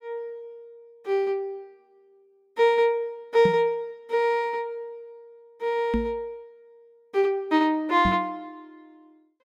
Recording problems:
microphone thump; at 3.5 s, at 6 s and at 8 s; peak +2 dB vs average level

